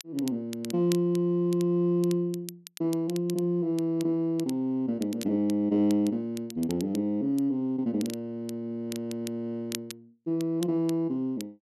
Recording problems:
crackling; vinyl, SNR 17 dB

